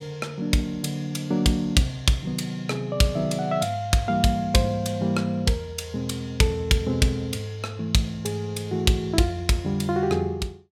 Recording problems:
none

